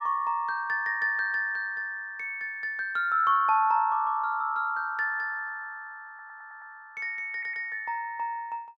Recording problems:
stutter; at 6 s and at 7.5 s

